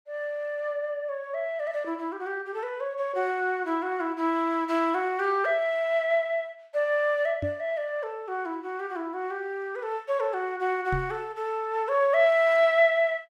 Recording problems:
microphone thump; at 7.5 s and at 11 s; peak -2 dB vs average level

